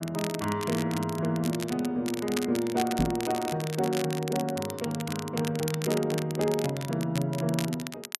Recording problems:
crackling; vinyl, SNR 9 dB
microphone bump; at 3 s; peak +4 dB vs average level

